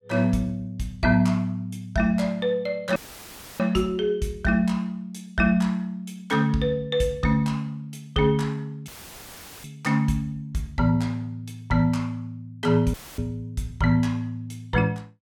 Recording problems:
dropout; at 3 s for 0.5 s, at 9 s for 1 s and at 13 s; filled with static

